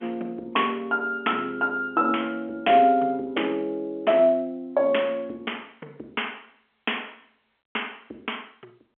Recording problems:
telephone audio; 280 Hz to 3.3 kHz, G.711

